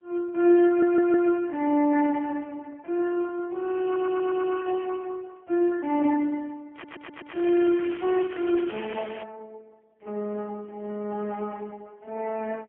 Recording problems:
phone line; 240 Hz to 3.1 kHz, AMR-NB, then MP3
stutter; at 0.5 s, at 4 s and at 6.5 s
crackling; from 7 to 9 s; loose cable, SNR 18 dB

